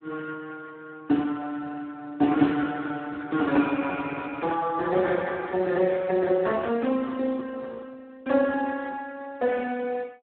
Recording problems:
telephone audio; 170 Hz to 3.6 kHz, Speex

